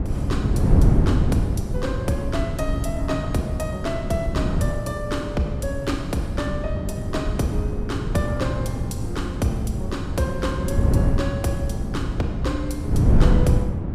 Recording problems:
wind on the microphone; below 170 Hz, SNR -3 dB

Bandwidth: 15.5 kHz